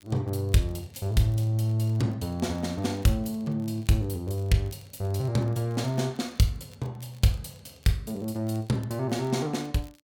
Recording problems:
crackle; vinyl, SNR 30 dB

